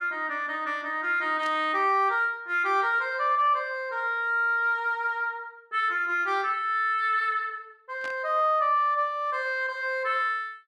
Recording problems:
burst of static; at 1.5 s and at 8 s; peak -12 dB vs average level

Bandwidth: 12.5 kHz